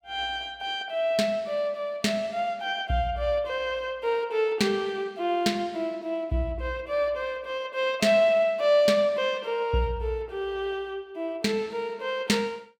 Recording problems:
none

